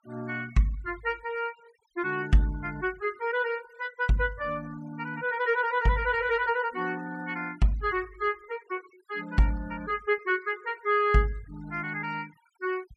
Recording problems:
denoising artefacts; signal-to-artefact ratio 24 dB

